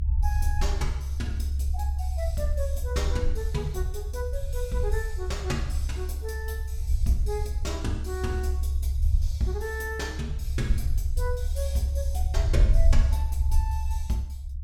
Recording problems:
low-frequency rumble; below 70 Hz, SNR -5 dB

